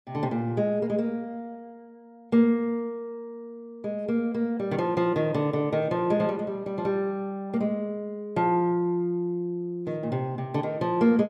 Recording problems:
none

